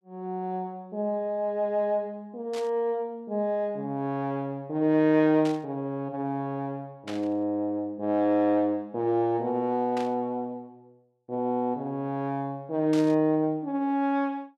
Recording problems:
burst of static; 5 times, first at 2.5 s; peak -8 dB vs average level

